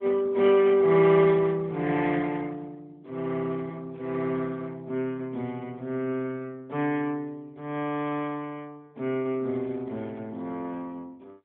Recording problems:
telephone audio; 190 Hz to 3.3 kHz, AMR-NB

